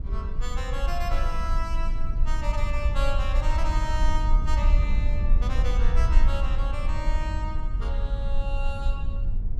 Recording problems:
low-frequency rumble; below 54 Hz, strongest tone 22 Hz, SNR -7 dB

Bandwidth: 15.5 kHz